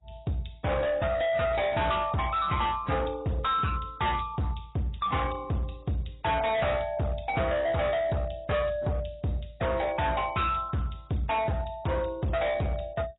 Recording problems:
lossy compression; AAC, log-spectral distance 4 dB, nothing above 3.8 kHz
distorted audio; hard clipping, signal-to-distortion ratio 6 dB

